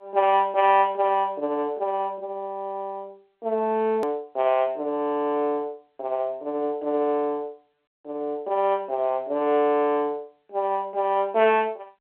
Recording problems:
phone line; 260 Hz to 3.3 kHz, G.711
edit click; at 4 s

